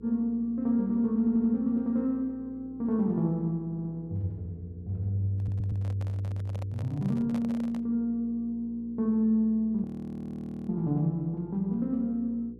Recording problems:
hum; 60 Hz, harmonics up to 480 Hz, SNR 20 dB
audio stuttering; at 1 s, at 3.5 s and at 5.5 s
microphone handling noise; from 5.5 to 8 s; peak -7 dB vs average level
audio freezing; at 10 s for 1 s

